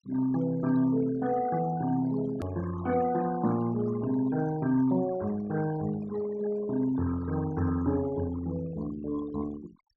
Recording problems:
treble cut off; nothing above 7.6 kHz
denoising artefacts; signal-to-artefact ratio 15 dB
click at an edit; at 2.5 s

